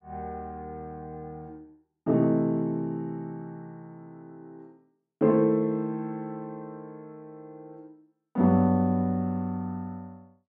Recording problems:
none

